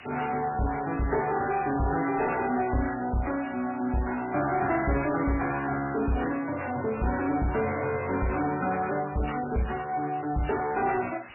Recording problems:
lossy compression; MP3, log-spectral distance 14 dB, nothing above 2.5 kHz
distorted audio; soft clipping, signal-to-distortion ratio 11 dB
hiss; SNR 21 dB

